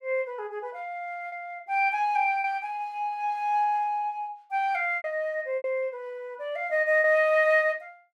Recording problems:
lost packets; 4% of the sound replaced, filled with repeated pitch periods

